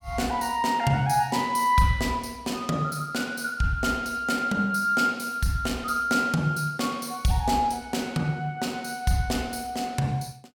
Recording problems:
none

